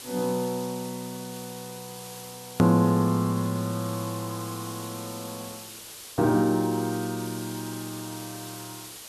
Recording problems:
background hiss; SNR 13 dB
hard cut with a click; at 2.5 s

